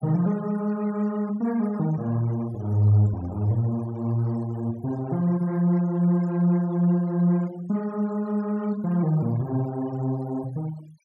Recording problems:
denoising artefacts; signal-to-artefact ratio 21 dB

